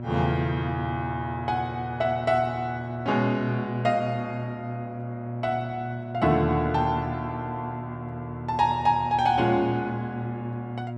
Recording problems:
hum; 60 Hz, harmonics up to 960 Hz, SNR 8 dB

